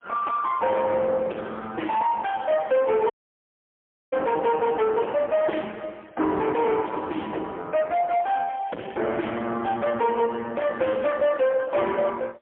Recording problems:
telephone audio; 240 Hz to 3.3 kHz, AMR-NB, then MP3
distorted audio; soft clipping, signal-to-distortion ratio 7 dB
dropout; at 3 s for 1 s

